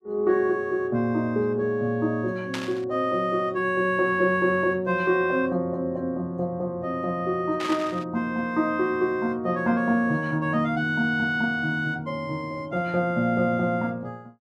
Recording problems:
burst of static; at 2.5 s and at 7.5 s; peak -3 dB vs average level

